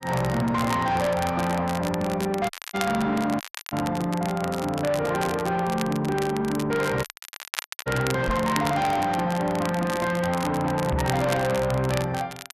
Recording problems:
distortion; soft clipping, signal-to-distortion ratio 10 dB
crackle; vinyl, SNR 12 dB
dropout; at 2.5 s, at 3.5 s and at 7 s for 1 s
microphone bump; at 8.5 s and at 11 s; peak +2 dB vs average level

